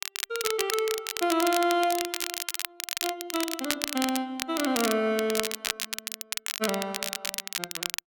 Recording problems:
crackling; vinyl, SNR 3 dB

